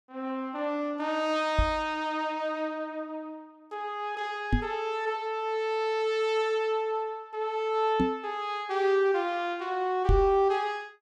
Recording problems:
microphone bump; 4 times, first at 1.5 s; peak +7 dB vs average level

